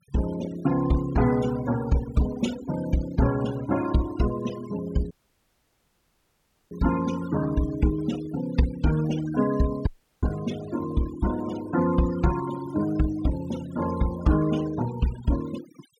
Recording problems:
noise reduction artefacts; signal-to-artefact ratio 14 dB
audio cutting out; at 5 s for 1.5 s and at 10 s

